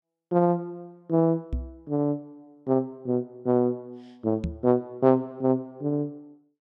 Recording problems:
microphone bump; at 1.5 s and at 4.5 s; peak 0 dB vs average level

